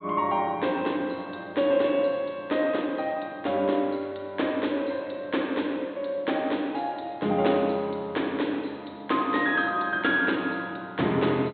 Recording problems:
low-pass filter; nothing above 4 kHz

